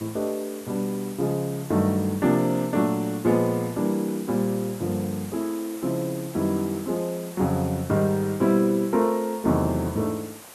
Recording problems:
background hiss; SNR 17 dB

